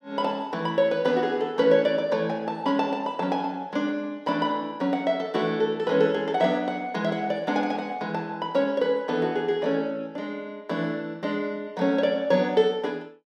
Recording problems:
none

